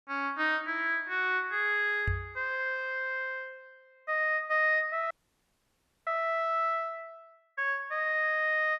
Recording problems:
microphone bump; at 2 s; peak 0 dB vs average level
audio freezing; at 5 s for 1 s

